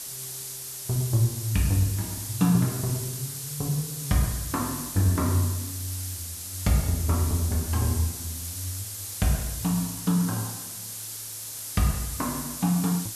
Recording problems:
background hiss; SNR 6 dB

